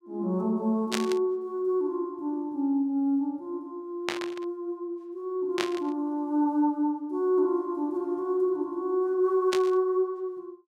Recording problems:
static burst; 4 times, first at 1 s; peak +3 dB vs average level

